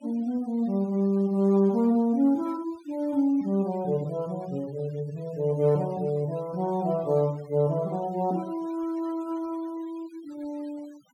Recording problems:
denoising artefacts; signal-to-artefact ratio 25 dB

